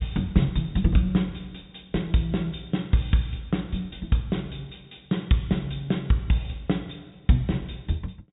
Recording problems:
low-pass filter; nothing above 4 kHz

